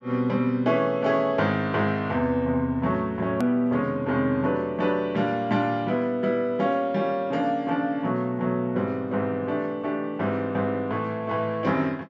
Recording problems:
treble missing; nothing above 8 kHz
edit click; at 3.5 s

